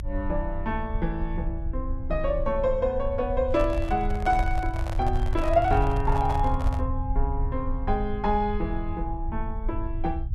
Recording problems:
low-frequency rumble; below 72 Hz, strongest tone 28 Hz, SNR 3 dB
microphone handling noise; from 3.5 to 7 s; peak -4 dB vs average level

